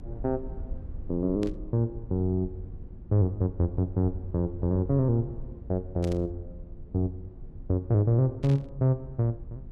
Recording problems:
hum; 50 Hz, harmonics up to 350 Hz, SNR 24 dB
low-frequency rumble; below 74 Hz, SNR 16 dB
static burst; at 1.5 s, at 6 s and at 8.5 s; peak -12 dB vs average level

